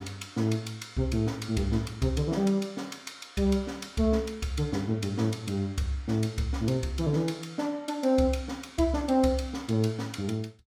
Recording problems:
none

